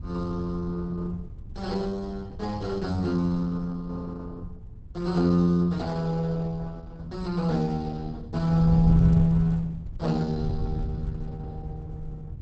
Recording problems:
lossy codec; Opus, log-spectral distance 2 dB, nothing above 8.2 kHz
wind on the microphone; below 120 Hz, SNR 9 dB

